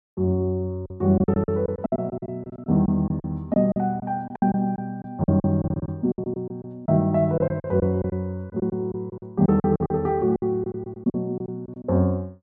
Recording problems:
packet loss; 15% of the sound replaced, filled with silence

